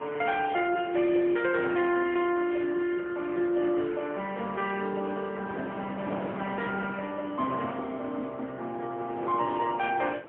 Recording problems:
telephone audio; 220 Hz to 3.2 kHz, AMR-NB, then MP3
wind noise; below 1 kHz, SNR 13 dB

